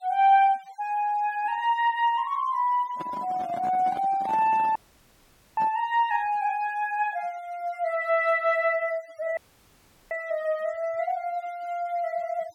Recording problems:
denoising artefacts; signal-to-artefact ratio 25 dB
microphone handling noise; from 3 to 6 s; peak -8 dB vs average level
dropout; at 5 s for 1 s and at 9.5 s for 0.5 s

